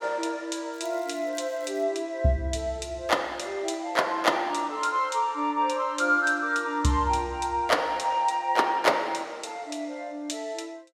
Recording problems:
crackling; from 0.5 to 2 s; loose cable, SNR 28 dB

